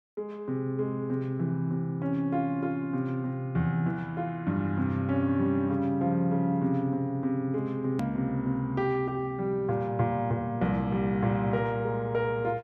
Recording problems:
click at an edit; at 8 s

